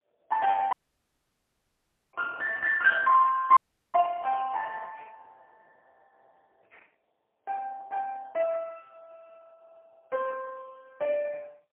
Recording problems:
phone line; 340 Hz to 2.3 kHz, AMR-NB, then MP3
dropout; at 0.5 s for 1.5 s and at 3.5 s

